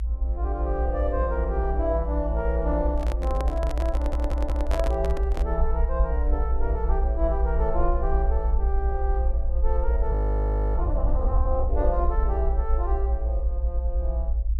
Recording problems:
rumble; below 58 Hz, SNR -4 dB
microphone handling noise; from 3 to 5.5 s; peak +4 dB vs average level
stutter; at 4 s
audio freezing; at 10 s for 0.5 s

